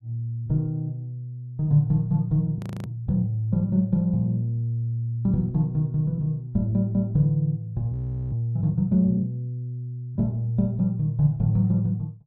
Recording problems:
frozen audio; at 2.5 s and at 8 s

